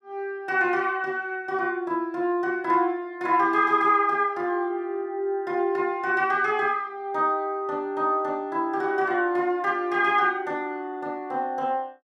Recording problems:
none

